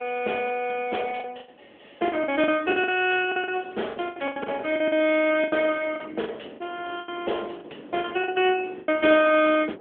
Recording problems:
telephone audio; 260 Hz to 3.4 kHz, AMR-NB
wind noise; below 530 Hz, SNR 19 dB
packet loss; 12% of the sound replaced, filled with the last packet

